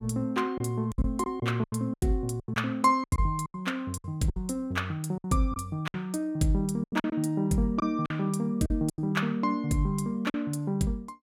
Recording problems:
lost packets; 11% of the sound replaced, filled with silence

